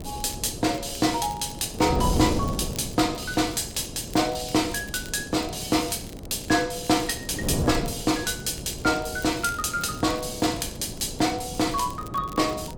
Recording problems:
wind on the microphone; below 380 Hz, SNR 9 dB
crackling; vinyl, SNR 21 dB

